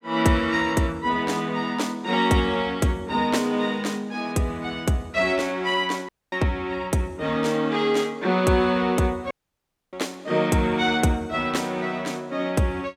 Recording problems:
audio cutting out; at 6 s and at 9.5 s for 0.5 s

